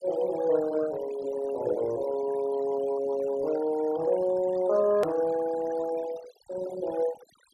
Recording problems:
noise reduction artefacts; signal-to-artefact ratio 17 dB
click at an edit; at 5 s

